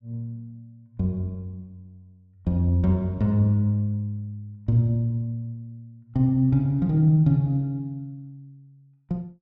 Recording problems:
none

